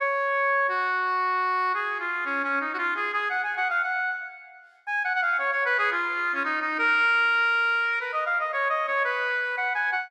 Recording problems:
none

